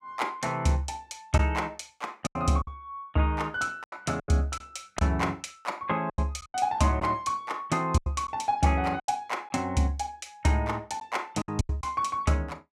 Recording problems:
packet loss; 8% of the sound replaced, filled with silence

